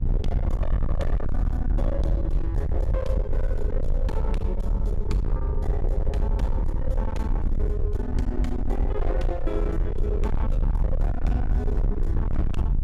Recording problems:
distorted audio; hard clipping, uneven, signal-to-distortion ratio 6 dB
electrical hum; 60 Hz, harmonics up to 1.2 kHz, SNR 25 dB
low-frequency rumble; below 66 Hz, SNR -6 dB

